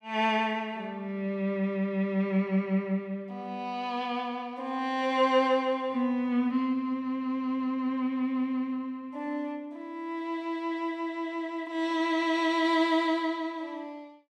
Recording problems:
none

